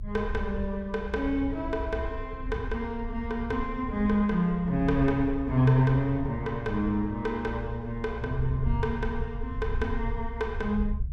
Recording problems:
rumble; below 74 Hz, SNR 8 dB

